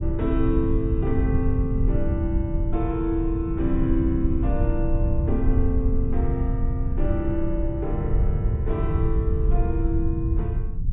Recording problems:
treble missing; nothing above 4 kHz
low-frequency rumble; below 92 Hz, SNR -2 dB

